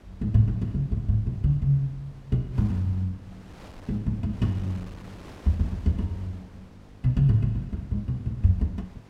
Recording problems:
electrical hum; 50 Hz, harmonics up to 750 Hz, SNR 27 dB
wind on the microphone; below 920 Hz, SNR 24 dB

